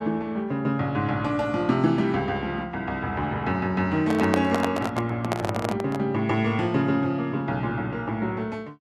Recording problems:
handling noise; from 4 to 6 s; peak +4 dB vs average level

